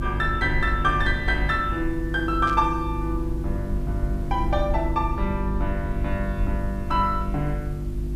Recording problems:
hum; 50 Hz, harmonics up to 350 Hz, SNR 4 dB
hiss; SNR 30 dB
rumble; below 76 Hz, SNR 7 dB
static burst; at 2.5 s; peak -10 dB vs average level

